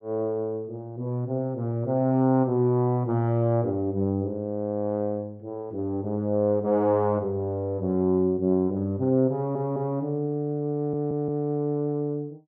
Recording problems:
audio stuttering; at 9.5 s and at 11 s

